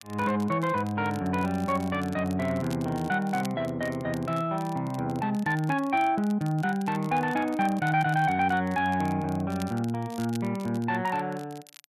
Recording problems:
crackle; vinyl, SNR 22 dB

